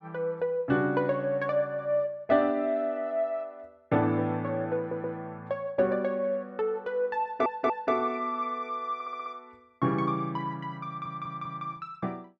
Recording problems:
stutter; 4 times, first at 5 s

